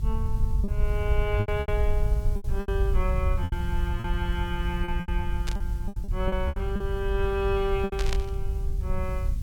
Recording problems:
background hiss; slope 0 dB per octave, SNR 22 dB
rumble; below 74 Hz, SNR -3 dB
packet loss; 11% of the sound replaced, filled with repeated pitch periods
burst of static; at 5.5 s and at 8 s; peak +2 dB vs average level

